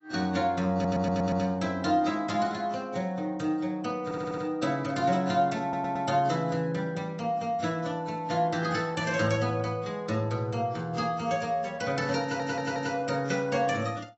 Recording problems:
lossy compression; AAC, log-spectral distance 3 dB, nothing above 7.8 kHz
audio stuttering; 4 times, first at 0.5 s

